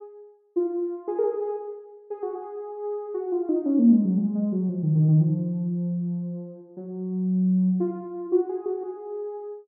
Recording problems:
none

